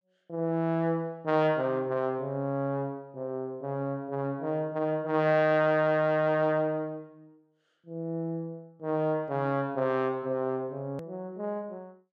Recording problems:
click at an edit; at 11 s

